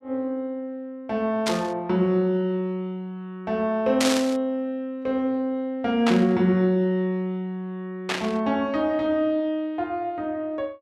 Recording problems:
burst of static; 4 times, first at 1.5 s; peak +4 dB vs average level

